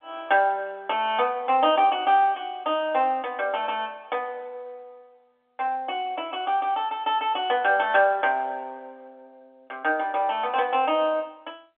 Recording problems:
telephone audio; 220 Hz to 3.5 kHz, G.711

